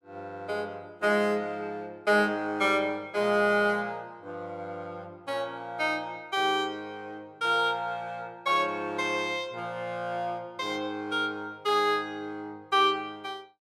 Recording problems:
none

